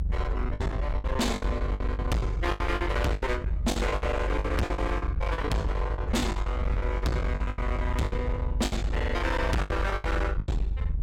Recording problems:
distortion; hard clipping, uneven, signal-to-distortion ratio 6 dB
rumble; below 76 Hz, strongest tone 48 Hz, SNR 1 dB
packet loss; 19% of the sound replaced, filled with the last packet

